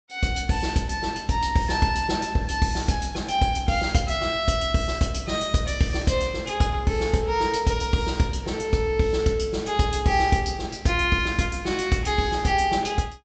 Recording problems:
treble cut off; nothing above 8 kHz

